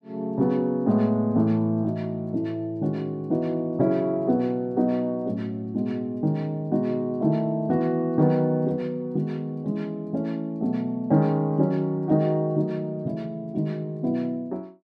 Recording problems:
none

